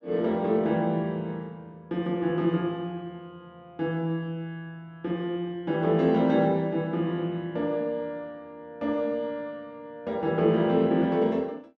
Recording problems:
none

